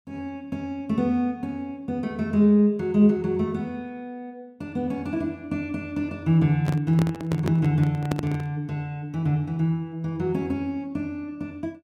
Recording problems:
microphone handling noise; from 6.5 to 8.5 s; peak +2 dB vs average level

